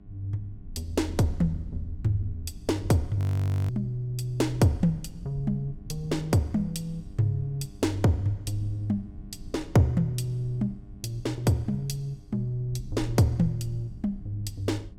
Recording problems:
hum; 50 Hz, harmonics up to 1.5 kHz, SNR 26 dB
low-frequency rumble; below 86 Hz, SNR 16 dB
audio freezing; at 3 s for 0.5 s

